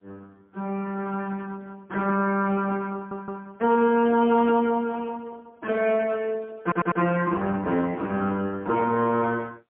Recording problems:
phone line; 220 Hz to 3.5 kHz, AMR-NB, then MP3
stutter; at 3 s and at 6.5 s

